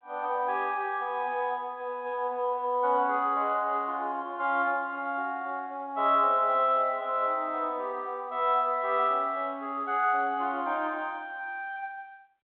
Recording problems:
telephone audio; 280 Hz to 3.7 kHz, G.726

